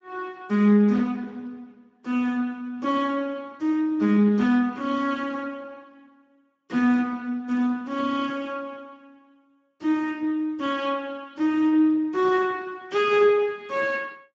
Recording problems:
lossy codec; Speex, log-spectral distance 3 dB

